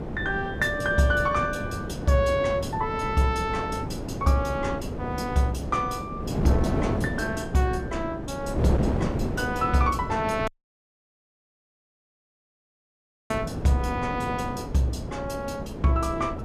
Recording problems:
wind noise; below 420 Hz, SNR 5 dB
audio cutting out; at 10 s for 3 s

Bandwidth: 14.5 kHz